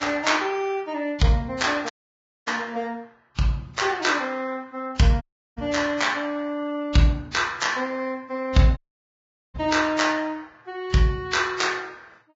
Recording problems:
lossy codec; Vorbis, log-spectral distance 3 dB, nothing above 7.3 kHz
audio cutting out; at 2 s for 0.5 s, at 5 s and at 9 s for 1 s

